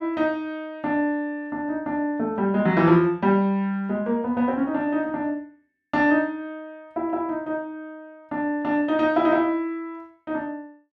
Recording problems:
none

